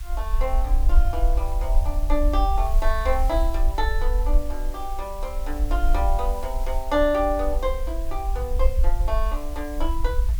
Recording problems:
hiss; SNR 17 dB
low-frequency rumble; below 50 Hz, SNR -2 dB

